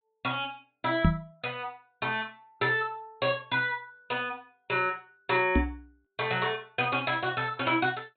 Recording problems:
low-pass filter; nothing above 4 kHz
microphone thump; at 1 s and at 5.5 s; peak +10 dB vs average level

